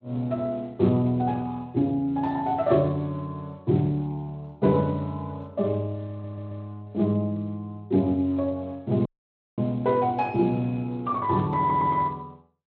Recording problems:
lossy codec; Speex, log-spectral distance 2 dB
stutter; at 6 s and at 12 s
dropout; at 9 s for 0.5 s

